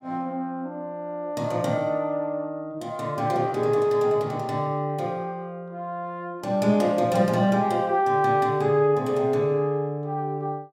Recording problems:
none

